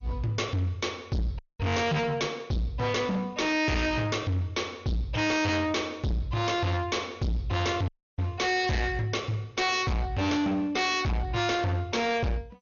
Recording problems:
lossy compression; MP2, log-spectral distance 3 dB, nothing above 6.7 kHz
distortion; hard clipping, uneven, signal-to-distortion ratio 6 dB
audio cutting out; at 1.5 s and at 8 s

